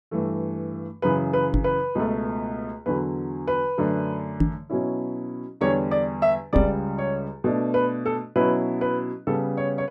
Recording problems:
microphone thump; at 1.5 s, at 4.5 s and at 6.5 s; peak +8 dB vs average level

